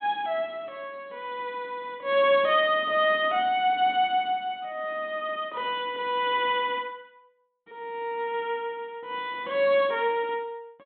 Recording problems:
low-pass filter; nothing above 4 kHz

